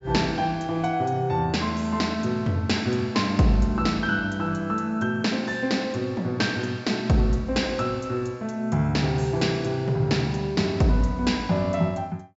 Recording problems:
low-pass filter; nothing above 8 kHz

